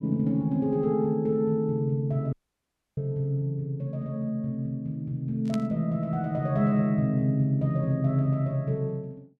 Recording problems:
dropout; at 2.5 s for 0.5 s
static burst; at 5.5 s; peak -9 dB vs average level

